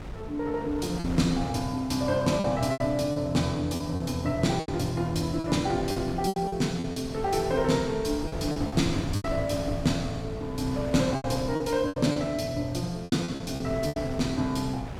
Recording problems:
wind noise; below 350 Hz, SNR 11 dB
lost packets; 9% of the sound replaced, filled with repeated pitch periods

